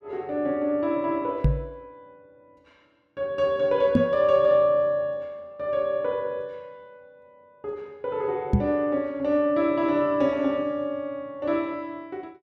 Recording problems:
microphone thump; at 1.5 s, at 4 s and at 8.5 s; peak +9 dB vs average level

